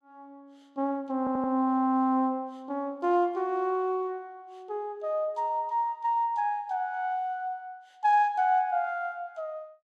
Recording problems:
audio stuttering; at 1 s

